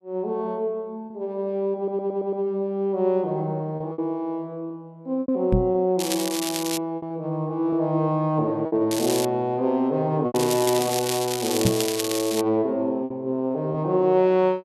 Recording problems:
lost packets; 5% of the sound replaced, filled with repeated pitch periods
audio stuttering; at 2 s
microphone thump; at 5.5 s and at 12 s; peak +6 dB vs average level
crackling; at 6 s, at 9 s and from 10 to 12 s; loose cable, SNR 5 dB

